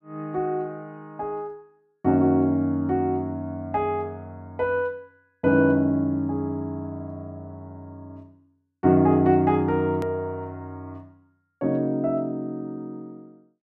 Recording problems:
hard cut with a click; at 10 s

